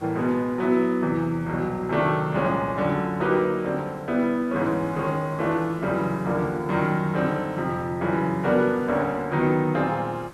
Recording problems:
background hiss; SNR 23 dB

